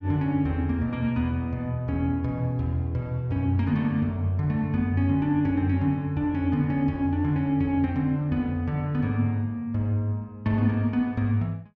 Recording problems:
none

